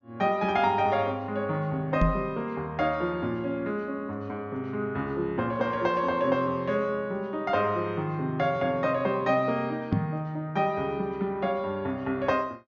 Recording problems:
treble cut off; nothing above 6.8 kHz
knock on the microphone; at 2 s and at 10 s; peak +7 dB vs average level

